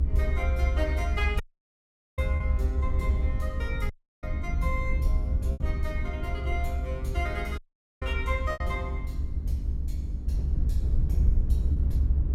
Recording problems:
hum; 50 Hz, harmonics up to 300 Hz, SNR 10 dB
rumble; below 72 Hz, SNR -6 dB
packet loss; 1.8% of the sound replaced, filled with repeated pitch periods
audio cutting out; at 1.5 s for 1 s, at 4 s and at 7.5 s

